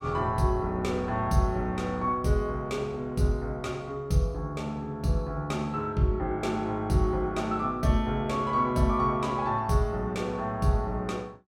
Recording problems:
none

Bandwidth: 17 kHz